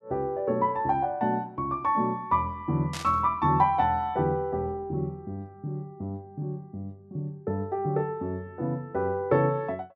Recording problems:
burst of static; at 3 s; peak -4 dB vs average level

